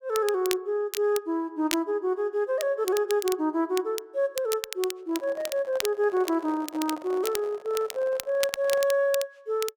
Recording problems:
crackling; vinyl, SNR 10 dB
microphone handling noise; from 5 to 9 s; peak -10 dB vs average level

